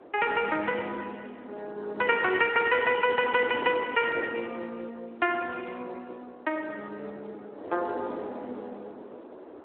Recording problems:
phone line; 260 Hz to 3.3 kHz, Speex
wind on the microphone; below 680 Hz, SNR 16 dB

